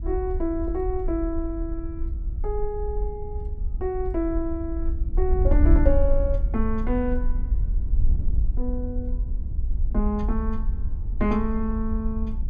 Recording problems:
wind noise; below 60 Hz, SNR -1 dB

